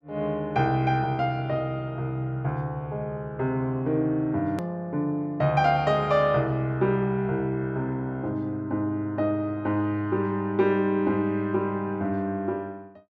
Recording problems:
click at an edit; at 4.5 s

